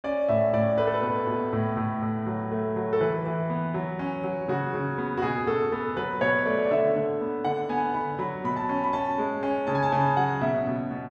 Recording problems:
none

